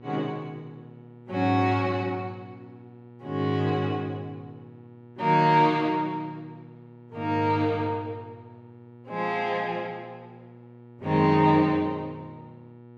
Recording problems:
hum; 60 Hz, harmonics up to 1.4 kHz, SNR 23 dB

